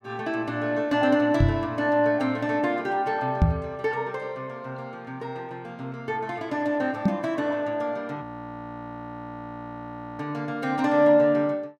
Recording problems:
knock on the microphone; at 1.5 s, at 3.5 s and at 7 s; peak +9 dB vs average level
frozen audio; at 8 s for 2 s

